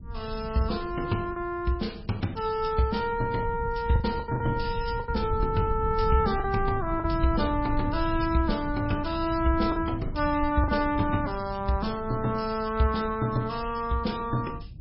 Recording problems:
lossy compression; MP3, log-spectral distance 4 dB, nothing above 5.3 kHz
low-frequency rumble; below 98 Hz, SNR 9 dB
lost packets; 4% of the sound replaced, filled with the last packet

